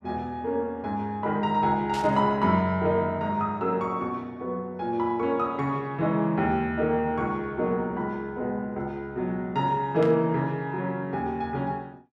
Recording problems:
burst of static; at 2 s and at 10 s; peak -7 dB vs average level

